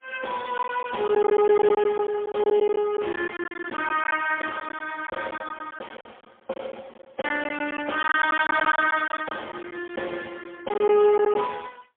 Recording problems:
telephone audio; 260 Hz to 3.4 kHz, AMR-NB, then MP3
packet loss; 11% of the sound replaced, filled with silence

